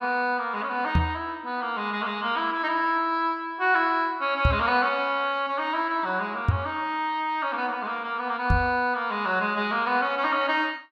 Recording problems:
microphone bump; 4 times, first at 1 s; peak +7 dB vs average level

